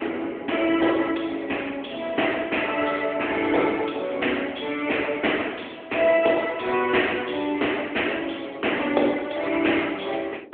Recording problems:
phone line; 260 Hz to 3.4 kHz, AMR-NB
wind noise; below 470 Hz, SNR 20 dB

